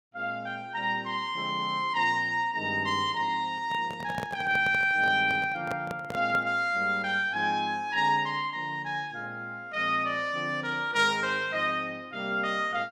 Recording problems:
microphone handling noise; from 3.5 to 6.5 s; peak -4 dB vs average level

